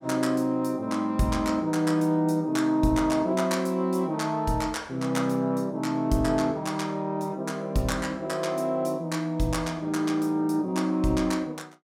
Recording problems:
none

